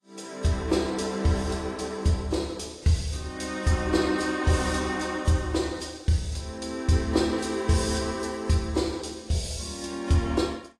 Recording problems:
codec artefacts; AAC, log-spectral distance 3 dB

